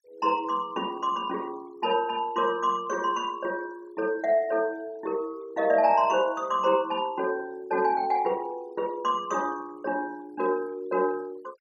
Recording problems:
noise reduction artefacts; signal-to-artefact ratio 26 dB

